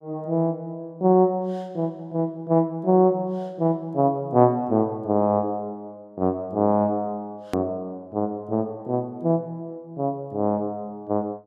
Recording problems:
edit click; at 7.5 s

